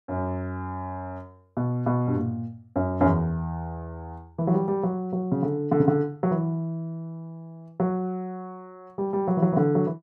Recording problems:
none

